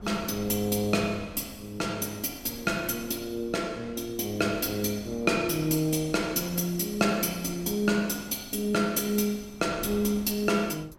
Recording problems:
wind on the microphone; below 350 Hz, SNR 20 dB

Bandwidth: 16.5 kHz